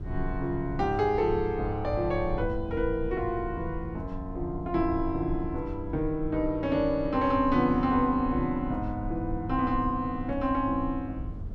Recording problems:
low-frequency rumble; below 86 Hz, SNR 11 dB

